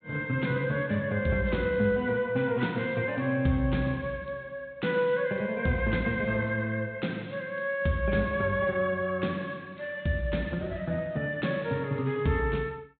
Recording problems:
low-pass filter; nothing above 4 kHz

